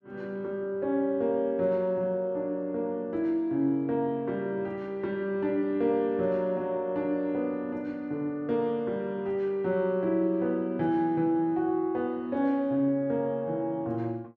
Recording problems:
none

